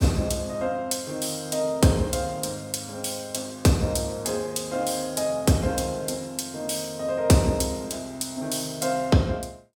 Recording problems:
none

